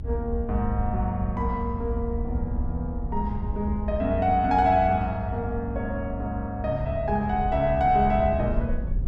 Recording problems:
low-frequency rumble; below 76 Hz, SNR 6 dB

